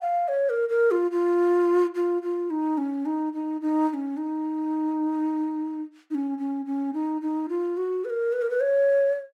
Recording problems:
none

